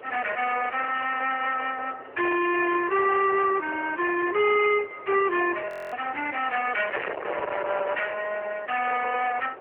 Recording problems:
telephone audio; 370 Hz to 3 kHz, AMR-NB
distorted audio; hard clipping, signal-to-distortion ratio 6 dB
wind on the microphone; below 1.7 kHz, SNR 13 dB
frozen audio; at 5.5 s

